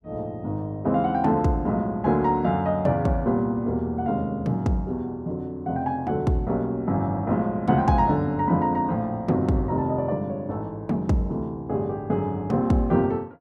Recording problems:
none

